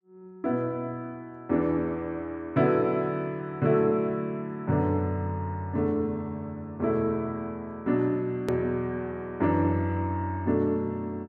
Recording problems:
click at an edit; at 8.5 s

